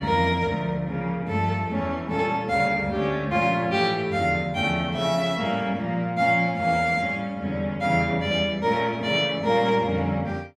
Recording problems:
none

